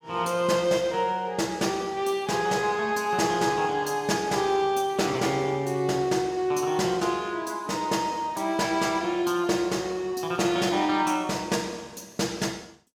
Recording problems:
none

